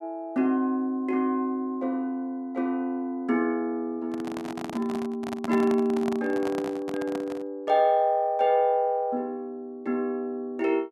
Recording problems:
handling noise; from 4 to 7.5 s; peak -3 dB vs average level

